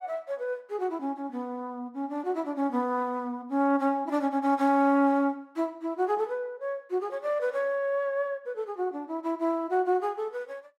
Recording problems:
none

